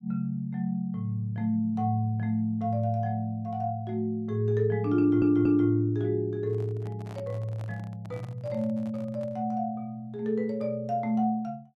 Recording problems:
audio stuttering; at 5 s
microphone handling noise; from 6.5 to 9.5 s; peak -13 dB vs average level

